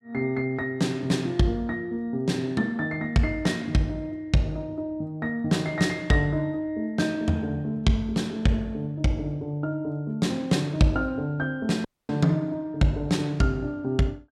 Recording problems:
audio cutting out; at 12 s

